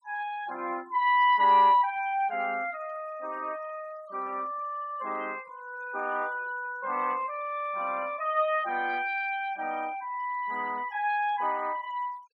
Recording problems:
noise reduction artefacts; signal-to-artefact ratio 25 dB

